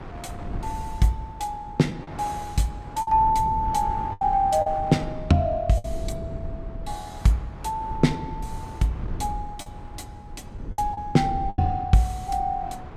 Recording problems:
low-frequency rumble; below 130 Hz, SNR 13 dB
wind noise; below 940 Hz, SNR 19 dB
lost packets; 4% of the sound replaced, filled with the last packet

